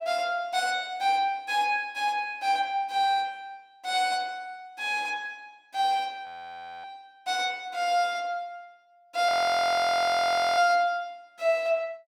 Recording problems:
audio freezing; at 6.5 s for 0.5 s and at 9.5 s for 1.5 s

